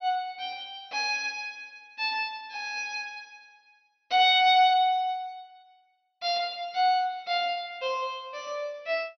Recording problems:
treble missing; nothing above 6.1 kHz

